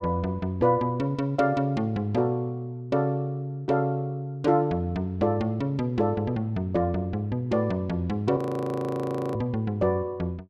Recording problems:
audio freezing; at 8.5 s for 1 s

